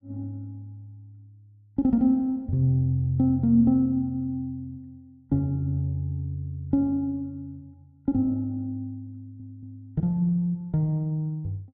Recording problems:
audio stuttering; at 9 s

